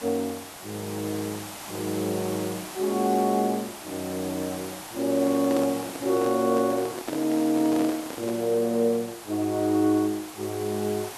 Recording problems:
background hiss; SNR 12 dB
handling noise; from 5 to 8.5 s; peak 0 dB vs average level

